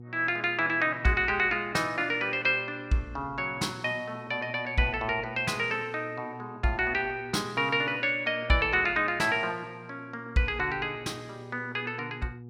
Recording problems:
electrical hum; 60 Hz, harmonics up to 840 Hz, SNR 19 dB

